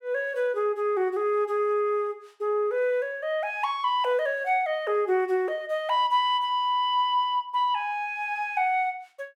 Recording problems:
none

